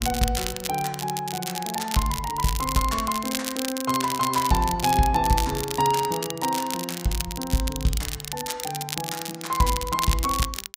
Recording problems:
crackle; vinyl, SNR 5 dB

